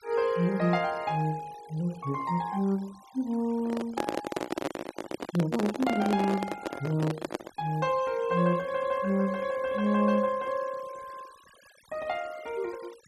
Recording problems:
denoising artefacts; signal-to-artefact ratio 22 dB
handling noise; from 3.5 to 7.5 s; peak +2 dB vs average level

